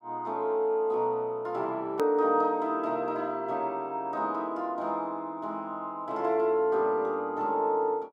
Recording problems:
click at an edit; at 2 s

